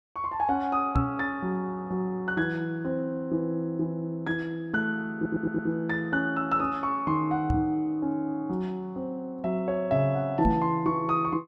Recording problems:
microphone thump; at 1 s, at 7.5 s and at 10 s; peak +5 dB vs average level
stutter; at 5 s

